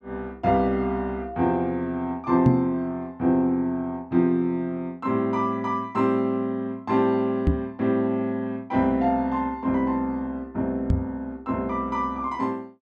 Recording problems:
microphone bump; at 2.5 s, at 7.5 s and at 11 s; peak +8 dB vs average level

